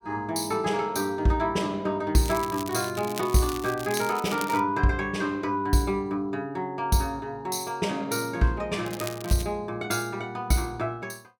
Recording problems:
crackling; from 2.5 to 4.5 s and at 9 s; loose cable, SNR 12 dB

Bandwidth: 17 kHz